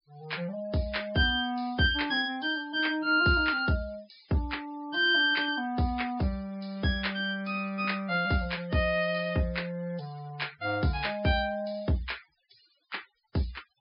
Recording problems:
treble missing; nothing above 5.5 kHz
noise reduction artefacts; signal-to-artefact ratio 25 dB

